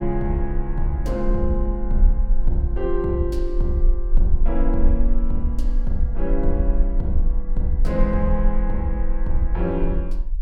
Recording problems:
rumble; below 36 Hz, strongest tone 24 Hz, SNR 0 dB

